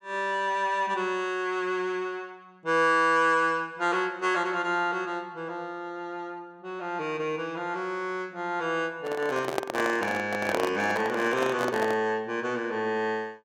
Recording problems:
microphone handling noise; from 9 to 12 s; peak +3 dB vs average level

